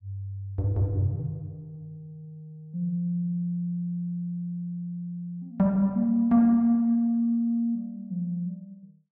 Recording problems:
none

